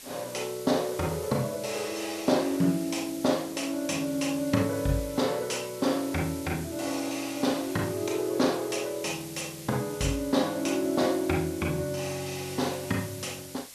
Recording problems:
hiss; slope +1 dB per octave, SNR 14 dB
crackling; at 3.5 s and from 5.5 to 7.5 s; loose cable, SNR 30 dB

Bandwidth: 13.5 kHz